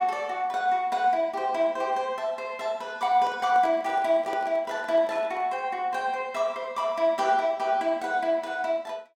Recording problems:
microphone handling noise; from 3 to 5.5 s; peak -8 dB vs average level

